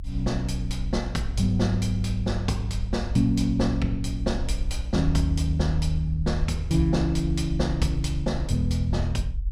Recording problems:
rumble; below 60 Hz, SNR 7 dB

